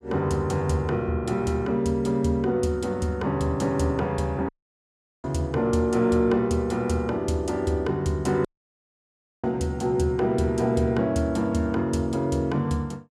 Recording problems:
dropout; at 4.5 s for 1 s and at 8.5 s for 1 s

